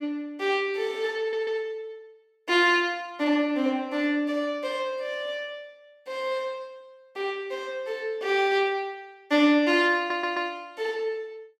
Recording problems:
stutter; at 1 s and at 10 s

